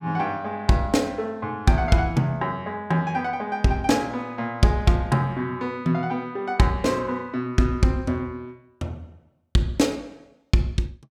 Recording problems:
none

